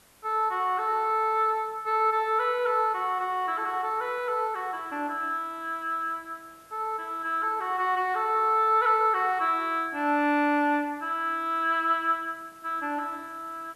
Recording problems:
hiss; slope -3 dB per octave, SNR 29 dB

